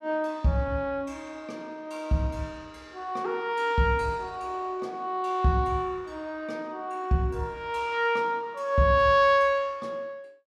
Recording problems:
none

